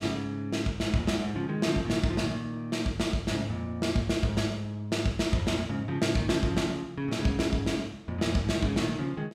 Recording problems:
none

